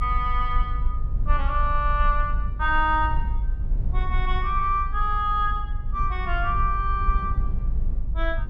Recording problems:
low-frequency rumble; below 52 Hz, strongest tone 22 Hz, SNR 2 dB

